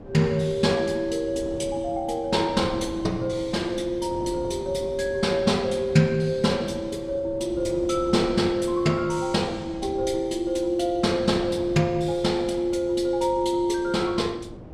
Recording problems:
wind on the microphone; below 430 Hz, SNR 16 dB

